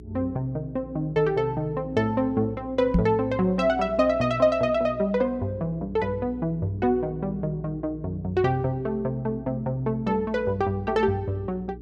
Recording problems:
mains hum; 60 Hz, harmonics up to 420 Hz, SNR 17 dB
microphone bump; at 3 s; peak +7 dB vs average level

